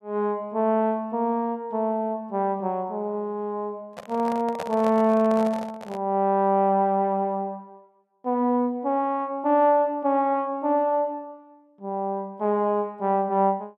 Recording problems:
microphone handling noise; from 4 to 6 s; peak -4 dB vs average level

